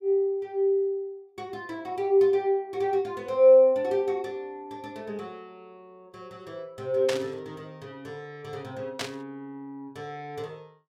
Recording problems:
burst of static; at 7 s and at 9 s; peak -2 dB vs average level

